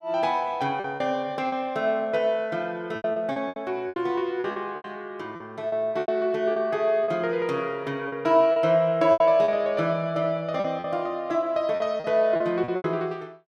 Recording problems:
lost packets; 10% of the sound replaced, filled with repeated pitch periods

